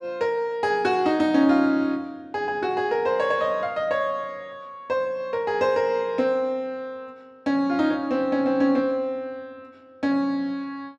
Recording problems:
none

